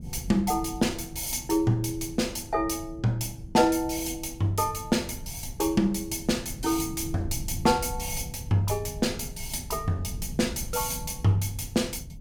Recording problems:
low-frequency rumble; below 150 Hz, SNR 13 dB

